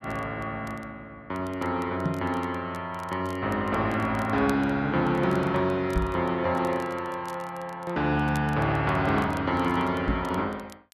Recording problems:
crackling; vinyl, SNR 26 dB
microphone thump; at 2 s, at 6 s and at 10 s; peak +4 dB vs average level

